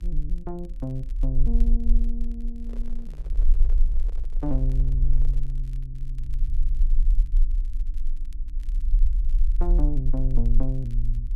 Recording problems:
electrical hum; 60 Hz, harmonics up to 300 Hz, SNR 23 dB
rumble; below 38 Hz, strongest tone 22 Hz, SNR -7 dB
crackle; vinyl, SNR 28 dB
handling noise; from 2.5 to 5.5 s; peak -10 dB vs average level

